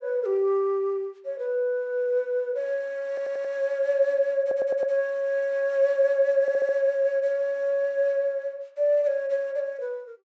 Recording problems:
low-pass filter; nothing above 8 kHz
stutter; at 3 s, at 4.5 s and at 6.5 s

